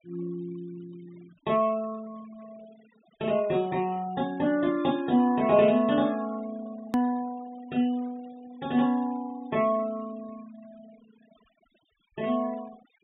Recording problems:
low-pass filter; nothing above 4 kHz
noise reduction artefacts; signal-to-artefact ratio 24 dB
click at an edit; at 7 s

